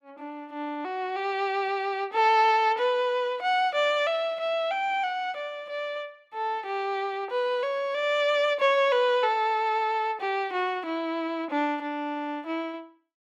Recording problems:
none

